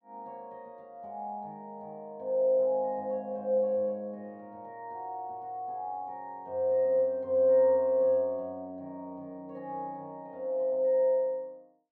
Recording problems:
none

